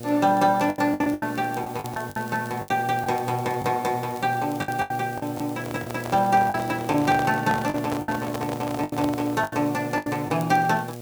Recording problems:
electrical hum; 60 Hz, harmonics up to 840 Hz, SNR 11 dB
background hiss; slope 0 dB per octave, SNR 20 dB
crackling; vinyl, SNR 25 dB
packet loss; 10% of the sound replaced, filled with the last packet
microphone handling noise; from 5.5 to 9.5 s; peak -2 dB vs average level

